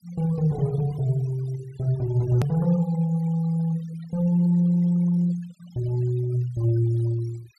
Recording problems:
noise reduction artefacts; signal-to-artefact ratio 23 dB
edit click; at 2.5 s

